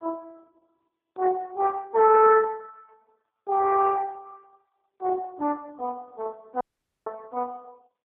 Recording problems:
phone line; 260 Hz to 2.2 kHz, AMR-NB
dropout; at 6.5 s

